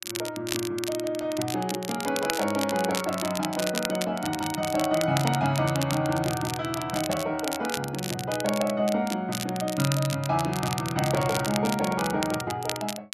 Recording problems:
crackling; vinyl, SNR 7 dB

